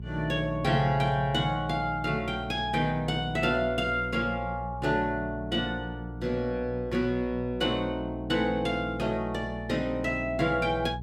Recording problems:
hum; 60 Hz, harmonics up to 420 Hz, SNR 11 dB

